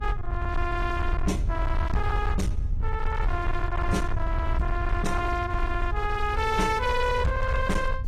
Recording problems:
codec artefacts; AAC, log-spectral distance 2 dB, nothing above 13.1 kHz
distorted audio; hard clipping, signal-to-distortion ratio 11 dB
hum; 60 Hz, harmonics up to 1.1 kHz, SNR 18 dB
low-frequency rumble; below 76 Hz, SNR 2 dB

